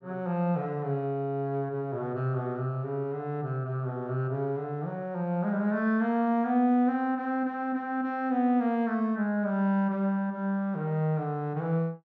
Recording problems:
low-pass filter; nothing above 8 kHz

